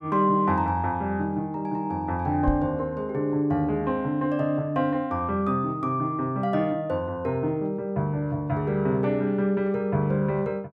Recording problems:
microphone thump; at 2.5 s; peak +3 dB vs average level

